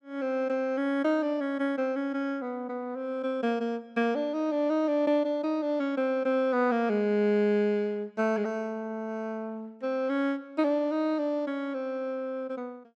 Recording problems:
none

